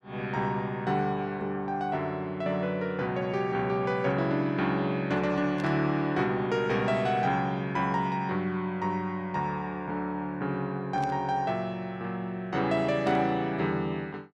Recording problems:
burst of static; at 5.5 s, at 11 s and at 13 s; peak -11 dB vs average level

